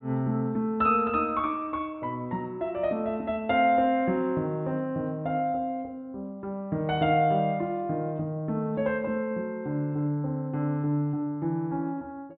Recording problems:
low-pass filter; nothing above 4 kHz

